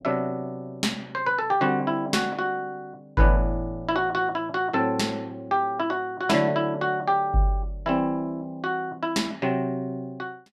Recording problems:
none

